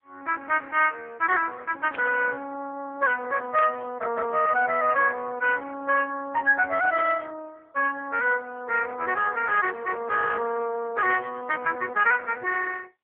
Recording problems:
telephone audio; 320 Hz to 3.3 kHz, AMR-NB
static burst; 4 times, first at 2 s; peak -5 dB vs average level

